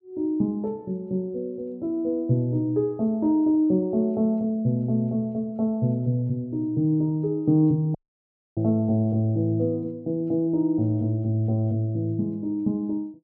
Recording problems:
audio cutting out; at 8 s for 0.5 s

